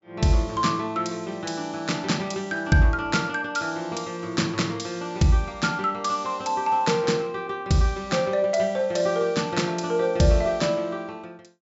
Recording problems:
treble missing; nothing above 8 kHz

